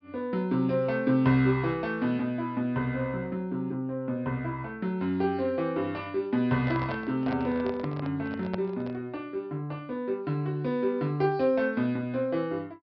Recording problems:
treble missing; nothing above 5.5 kHz
microphone handling noise; from 6.5 to 9 s; peak -3 dB vs average level

